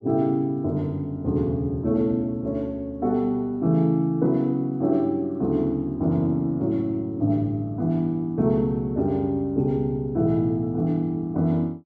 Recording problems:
none

